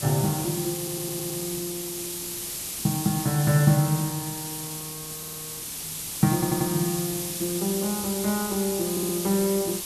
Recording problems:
hiss; SNR 4 dB
stutter; 4 times, first at 1 s

